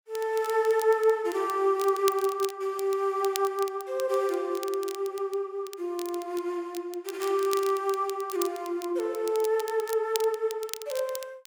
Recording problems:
crackle; vinyl, SNR 14 dB

